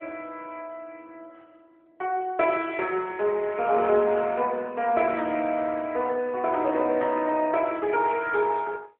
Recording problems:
telephone audio; 260 Hz to 3.3 kHz, AMR-NB

